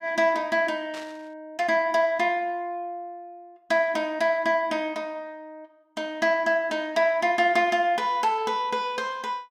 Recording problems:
static burst; at 1 s; peak -13 dB vs average level

